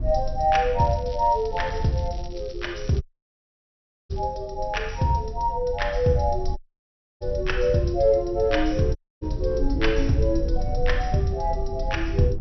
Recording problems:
low-pass filter; nothing above 5.9 kHz
low-frequency rumble; below 66 Hz, SNR 8 dB
crackling; from 1 to 4 s; loose cable, SNR 25 dB
audio cutting out; at 3 s for 1 s, at 6.5 s for 0.5 s and at 9 s

